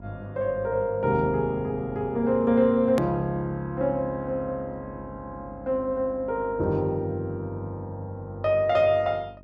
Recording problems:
hum; 50 Hz, harmonics up to 1 kHz, SNR 22 dB
hard cut with a click; at 3 s

